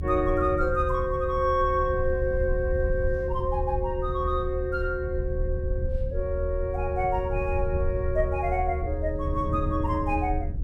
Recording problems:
low-frequency rumble; below 76 Hz, SNR 5 dB
wind on the microphone; below 160 Hz, SNR 12 dB

